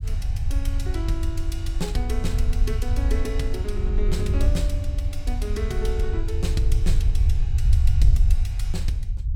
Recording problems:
rumble; below 72 Hz, SNR -7 dB

